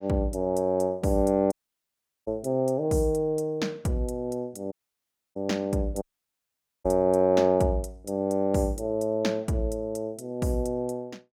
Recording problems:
dropout; at 1.5 s for 0.5 s, at 4.5 s for 0.5 s and at 6 s for 1 s

